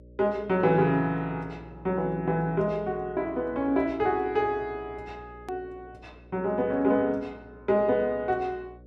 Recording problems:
electrical hum; 60 Hz, harmonics up to 600 Hz, SNR 22 dB
edit click; at 5.5 s

